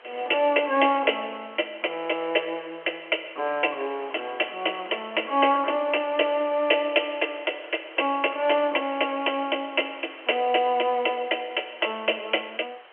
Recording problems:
phone line; 300 Hz to 3.2 kHz, G.711
background hiss; SNR 22 dB

